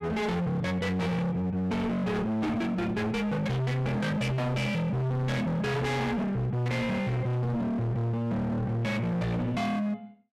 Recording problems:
distortion; hard clipping, signal-to-distortion ratio 6 dB

